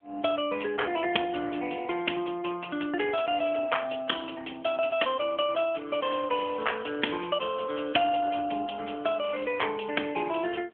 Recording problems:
phone line; 240 Hz to 3.3 kHz, AMR-NB

